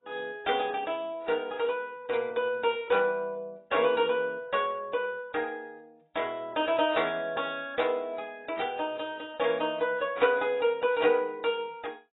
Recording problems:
lossy compression; AAC, log-spectral distance 3 dB, nothing above 3.8 kHz

